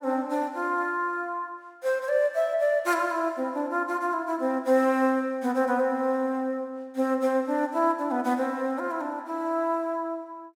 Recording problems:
none

